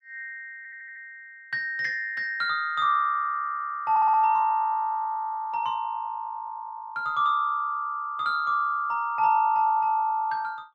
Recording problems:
stutter; at 0.5 s and at 4 s

